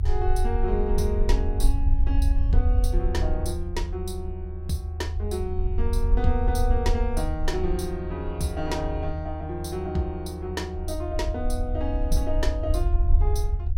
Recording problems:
low-frequency rumble; below 78 Hz, SNR -3 dB

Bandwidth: 16 kHz